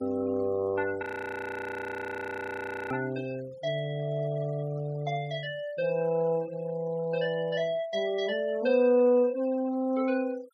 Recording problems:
denoising artefacts; signal-to-artefact ratio 24 dB
audio freezing; at 1 s for 2 s

